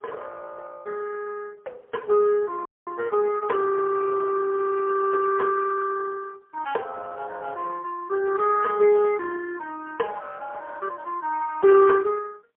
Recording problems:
phone line; 340 Hz to 3.5 kHz, AMR-NB, then MP3
audio cutting out; at 2.5 s

